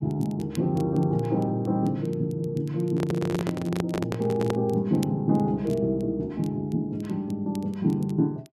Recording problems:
crackling; vinyl, SNR 26 dB
microphone handling noise; from 3 to 4.5 s; peak +1 dB vs average level

